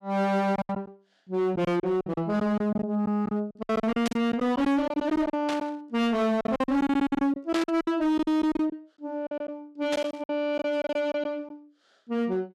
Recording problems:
distorted audio; hard clipping, signal-to-distortion ratio 7 dB
lost packets; 14% of the sound replaced, filled with silence
static burst; 4 times, first at 4 s; peak -2 dB vs average level

